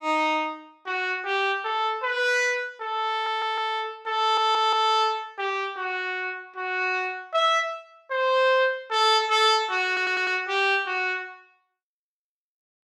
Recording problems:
audio stuttering; at 3 s, at 4 s and at 10 s

